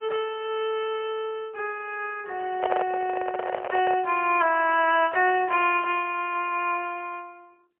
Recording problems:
telephone audio; 340 Hz to 3.3 kHz, AMR-NB, then MP3
microphone handling noise; from 2.5 to 4 s; peak +3 dB vs average level

